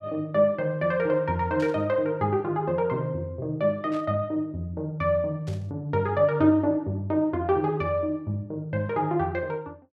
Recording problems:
burst of static; at 1.5 s, at 4 s and at 5.5 s; peak -14 dB vs average level

